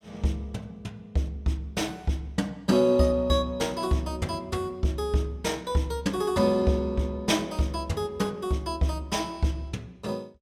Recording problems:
none

